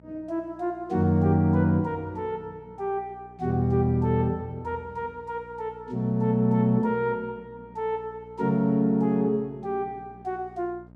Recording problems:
hum; 60 Hz, harmonics up to 1.3 kHz, SNR 25 dB

